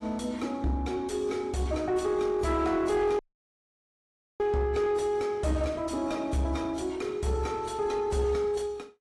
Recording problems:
codec artefacts; AAC, log-spectral distance 2 dB, nothing above 11 kHz
distortion; soft clipping, signal-to-distortion ratio 10 dB
dropout; at 3 s for 1 s

